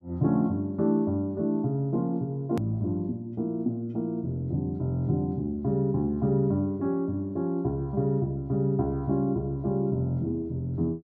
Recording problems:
hard cut with a click; at 2.5 s

